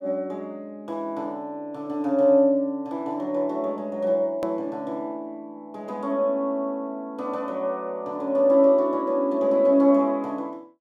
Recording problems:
edit click; at 4.5 s

